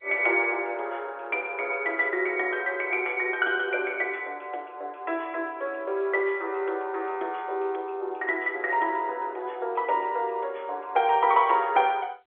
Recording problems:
telephone audio; 300 Hz to 3.7 kHz, G.711

